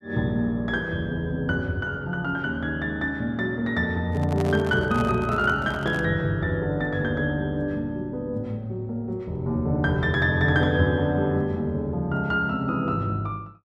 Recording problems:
handling noise; from 4 to 6 s; peak -3 dB vs average level

